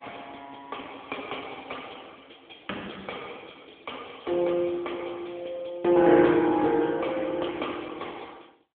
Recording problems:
telephone audio; 220 Hz to 3.4 kHz, AMR-NB

